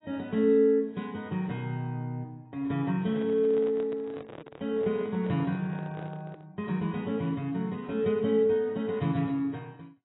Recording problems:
lossy codec; AAC, log-spectral distance 2 dB, nothing above 3.4 kHz
handling noise; from 3 to 6.5 s; peak -11 dB vs average level

